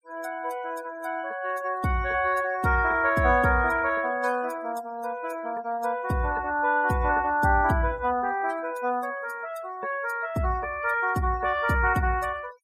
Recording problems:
denoising artefacts; signal-to-artefact ratio 23 dB

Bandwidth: 16 kHz